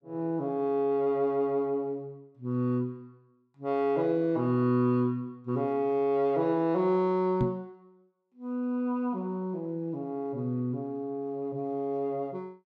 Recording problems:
microphone bump; at 7.5 s; peak +4 dB vs average level

